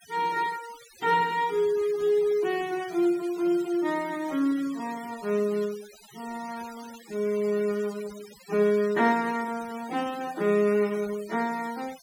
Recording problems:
denoising artefacts; signal-to-artefact ratio 19 dB

